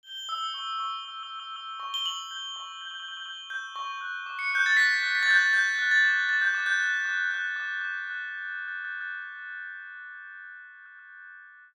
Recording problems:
stutter; 4 times, first at 1 s

